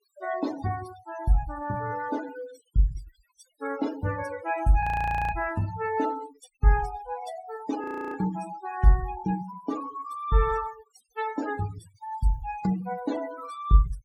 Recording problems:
noise reduction artefacts; signal-to-artefact ratio 16 dB
frozen audio; at 5 s and at 8 s

